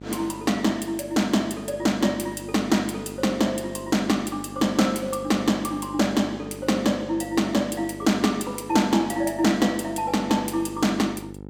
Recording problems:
hum; 50 Hz, harmonics up to 1 kHz, SNR 16 dB

